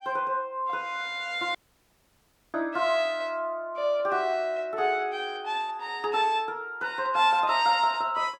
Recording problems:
dropout; at 1.5 s for 1 s

